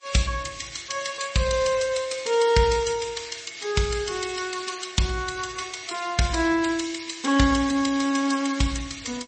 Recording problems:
codec artefacts; MP3, then MP3, log-spectral distance 6 dB, nothing above 8.2 kHz

